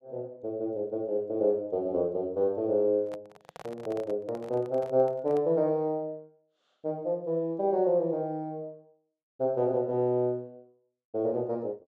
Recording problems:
handling noise; from 3 to 5.5 s; peak -11 dB vs average level

